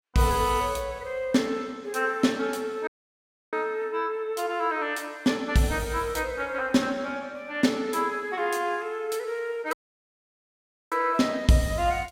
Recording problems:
audio cutting out; at 3 s for 0.5 s and at 9.5 s for 1 s

